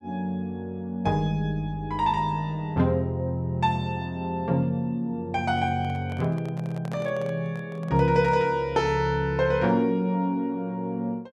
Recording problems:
microphone handling noise; from 5.5 to 8.5 s; peak -9 dB vs average level

